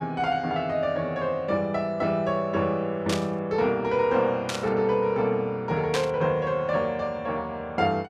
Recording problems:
static burst; at 3 s, at 4.5 s and at 6 s; peak +1 dB vs average level

